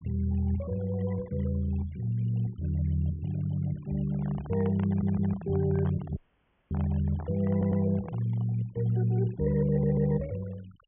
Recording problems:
treble cut off; nothing above 3.3 kHz
noise reduction artefacts; signal-to-artefact ratio 24 dB
handling noise; from 4 to 8.5 s; peak -10 dB vs average level
audio stuttering; at 5 s, at 7.5 s and at 9.5 s
dropout; at 6 s for 0.5 s

